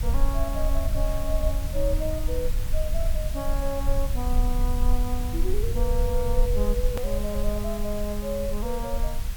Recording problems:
hiss; slope -1 dB per octave, SNR 9 dB
low-frequency rumble; below 50 Hz, strongest tone 18 Hz, SNR -3 dB
hard cut with a click; at 7 s

